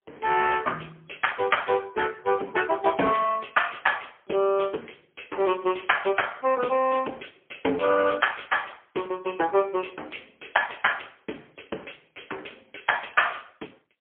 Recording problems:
telephone audio; 240 Hz to 3.3 kHz, AMR-NB, then MP3

